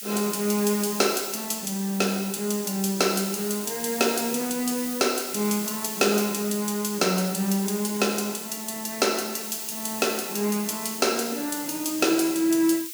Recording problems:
background hiss; slope +8 dB per octave, SNR 8 dB

